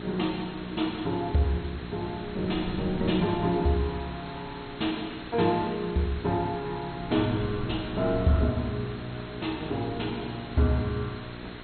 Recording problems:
lossy compression; MP2, log-spectral distance 12 dB, nothing above 4.1 kHz
electrical hum; 60 Hz, harmonics up to 1.3 kHz, SNR 13 dB
background hiss; SNR 14 dB
wind noise; below 190 Hz, SNR 17 dB

